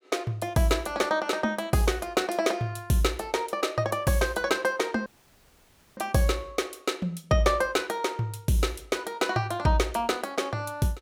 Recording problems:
audio cutting out; at 5 s for 1 s

